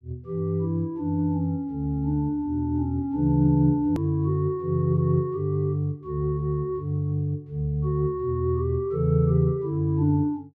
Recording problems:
edit click; at 4 s

